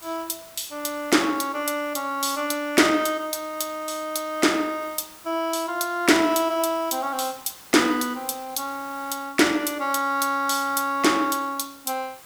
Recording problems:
hiss; slope -1 dB per octave, SNR 21 dB

